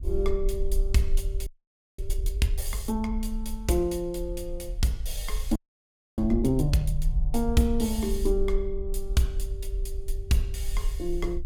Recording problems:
rumble; below 48 Hz, SNR 4 dB
frozen audio; at 1.5 s for 0.5 s and at 5.5 s for 0.5 s

